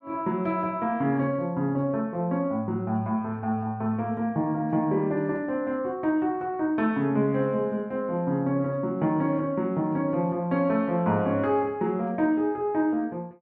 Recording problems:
none

